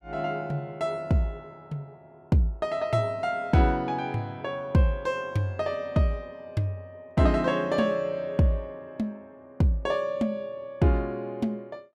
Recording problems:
none

